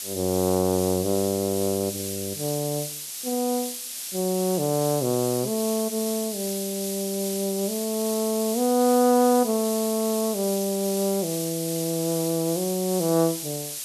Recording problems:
background hiss; SNR 6 dB

